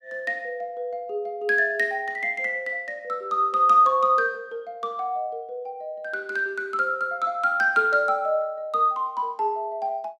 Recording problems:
none

